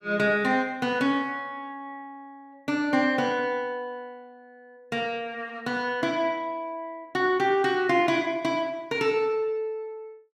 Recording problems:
none

